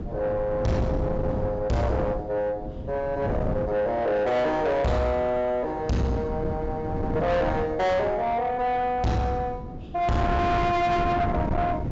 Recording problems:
treble missing; nothing above 8 kHz
distortion; soft clipping, signal-to-distortion ratio 8 dB
wind on the microphone; below 370 Hz, SNR 6 dB

